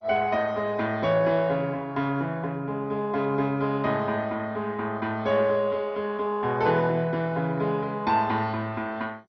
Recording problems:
lossy codec; MP2, log-spectral distance 2 dB, nothing above 5.8 kHz

